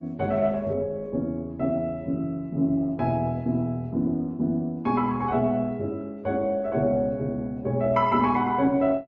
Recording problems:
lossy codec; Opus, then MP3, log-spectral distance 2 dB

